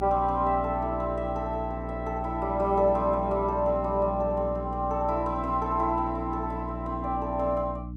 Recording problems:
hum; 60 Hz, harmonics up to 300 Hz, SNR 9 dB

